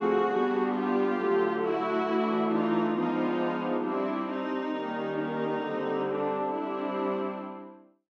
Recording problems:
none

